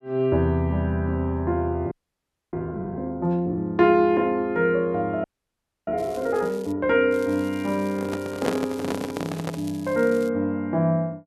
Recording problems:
frozen audio; at 2 s for 0.5 s and at 5 s for 0.5 s
crackling; at 6 s, at 6.5 s and from 7 to 10 s; loose cable, SNR 23 dB
handling noise; from 8 to 9.5 s; peak +2 dB vs average level

